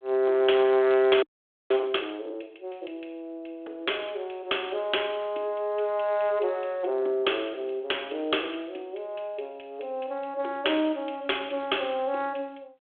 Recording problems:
phone line; 280 Hz to 3.5 kHz, G.726
frozen audio; at 1 s

